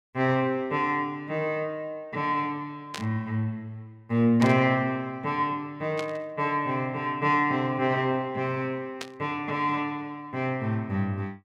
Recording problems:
burst of static; 4 times, first at 3 s; peak -3 dB vs average level

